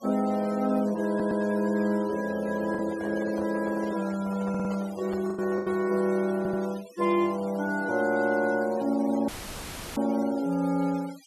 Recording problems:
noise reduction artefacts; signal-to-artefact ratio 20 dB
packet loss; 2% of the sound replaced, filled with the last packet
stutter; at 1 s, at 4.5 s and at 6.5 s
microphone handling noise; from 3 to 6 s; peak -9 dB vs average level
audio cutting out; at 9.5 s for 0.5 s; filled with static

